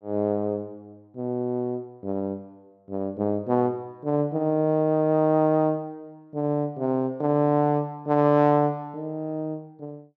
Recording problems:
none

